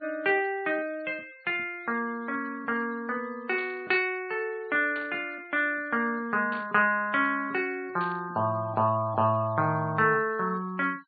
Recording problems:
treble missing; nothing above 4.6 kHz
noise reduction artefacts; signal-to-artefact ratio 27 dB
static burst; 4 times, first at 3.5 s; peak -12 dB vs average level

